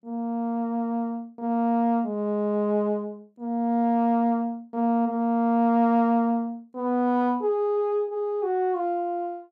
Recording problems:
none

